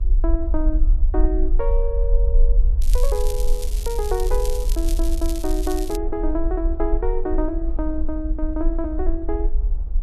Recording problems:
rumble; below 44 Hz, strongest tone 20 Hz, SNR -3 dB
wind noise; below 430 Hz, SNR 20 dB
crackle; from 3 to 6 s; loose cable, SNR 9 dB

